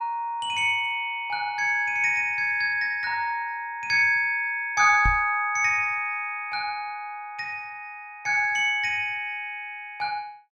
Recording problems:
microphone bump; at 5 s; peak 0 dB vs average level

